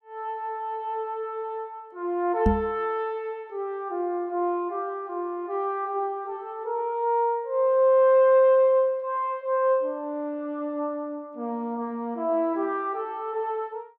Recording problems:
knock on the microphone; at 2.5 s; peak +6 dB vs average level

